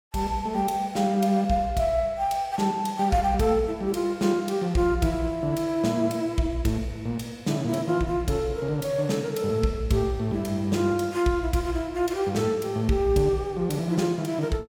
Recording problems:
none

